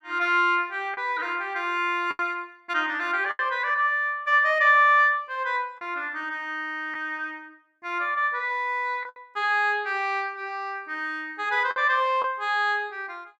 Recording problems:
packet loss; 3% of the sound replaced, filled with the last packet

